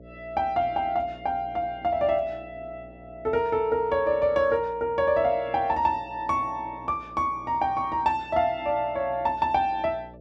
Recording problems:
hum; 60 Hz, harmonics up to 660 Hz, SNR 23 dB

